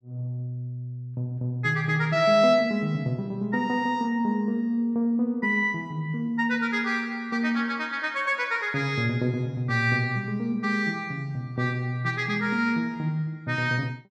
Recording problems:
none

